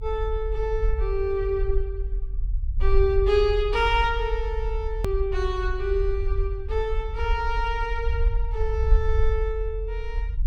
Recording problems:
rumble; below 54 Hz, SNR 2 dB
click at an edit; at 5 s

